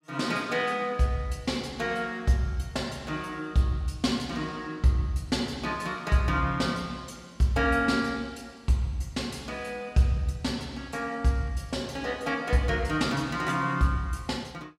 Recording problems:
none

